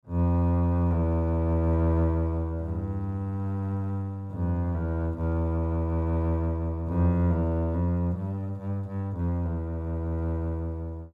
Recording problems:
none

